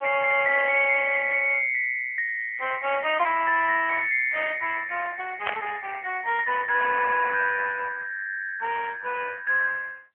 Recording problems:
phone line; 340 Hz to 3.2 kHz, AMR-NB
static burst; at 5.5 s; peak -1 dB vs average level

